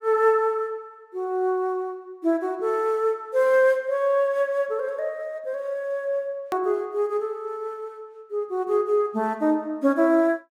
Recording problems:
hard cut with a click; at 6.5 s

